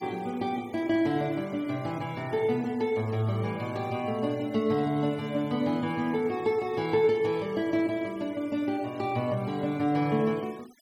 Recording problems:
denoising artefacts; signal-to-artefact ratio 23 dB

